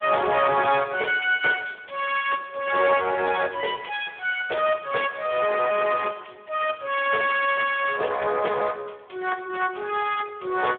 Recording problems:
telephone audio; 340 Hz to 3.4 kHz, Speex

